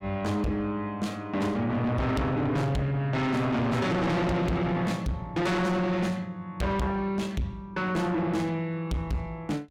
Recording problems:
distortion; soft clipping, signal-to-distortion ratio 6 dB

